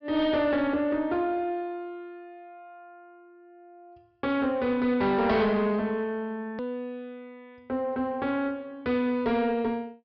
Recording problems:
treble missing; nothing above 5.5 kHz
distortion; soft clipping, signal-to-distortion ratio 12 dB
hard cut with a click; at 6.5 s

